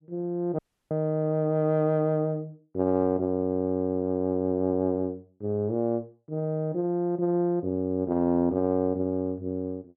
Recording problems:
audio cutting out; at 0.5 s

